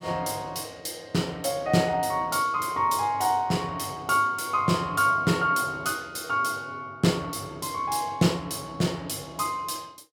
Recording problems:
none

